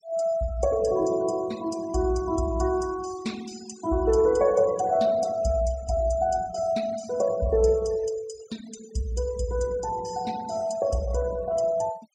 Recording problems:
noise reduction artefacts; signal-to-artefact ratio 20 dB

